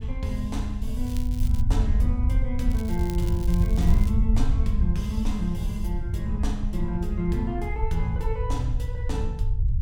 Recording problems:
low-frequency rumble; below 76 Hz, SNR -3 dB
wind noise; below 78 Hz, SNR 7 dB
crackle; at 1 s and from 2.5 to 4 s; loose cable, SNR 16 dB

